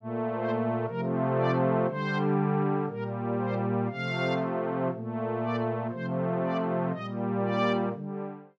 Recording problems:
none

